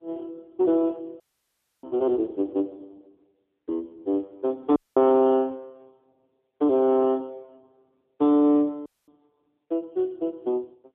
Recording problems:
phone line; 220 Hz to 3.4 kHz, AMR-NB
dropout; at 1 s for 0.5 s, at 5 s and at 9 s

